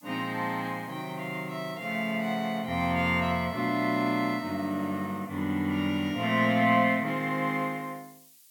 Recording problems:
background hiss; SNR 26 dB

